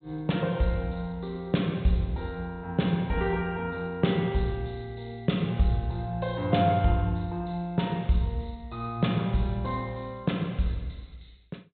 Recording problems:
low-pass filter; nothing above 4 kHz

